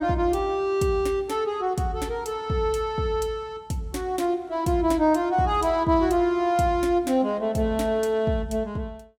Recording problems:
none

